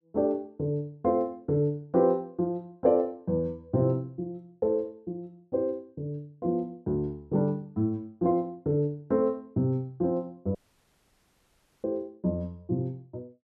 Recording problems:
dropout; at 11 s for 1.5 s

